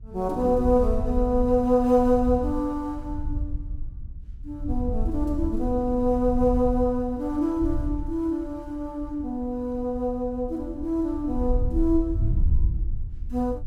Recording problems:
wind on the microphone; below 72 Hz, SNR 7 dB

